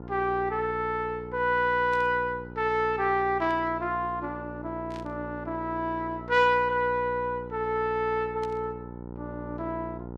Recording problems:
mains hum; 60 Hz, harmonics up to 1.4 kHz, SNR 13 dB
burst of static; 4 times, first at 2 s; peak -13 dB vs average level

